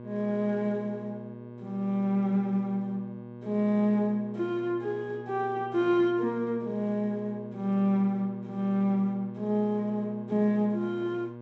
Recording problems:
low-pass filter; nothing above 8 kHz
hum; 60 Hz, harmonics up to 1.2 kHz, SNR 14 dB

